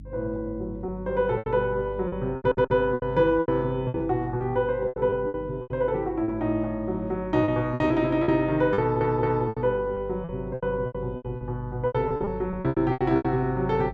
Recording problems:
hum; 50 Hz, harmonics up to 300 Hz, SNR 16 dB
lost packets; 14% of the sound replaced, filled with repeated pitch periods
audio stuttering; at 2.5 s and at 9 s

